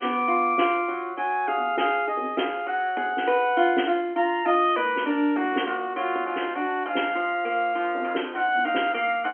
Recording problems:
telephone audio; 220 Hz to 3.3 kHz, G.711

